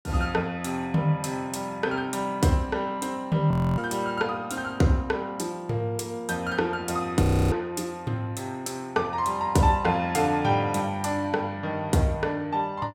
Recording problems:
frozen audio; at 3.5 s and at 7 s

